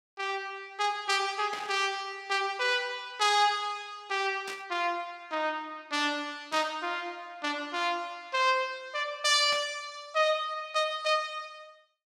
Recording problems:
static burst; 4 times, first at 1.5 s; peak -6 dB vs average level

